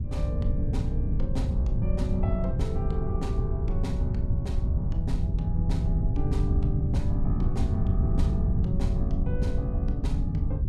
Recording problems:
wind noise; below 110 Hz, SNR -6 dB

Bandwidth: 16.5 kHz